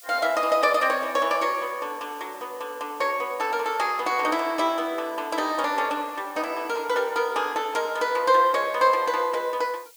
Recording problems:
hiss; slope +4 dB per octave, SNR 23 dB

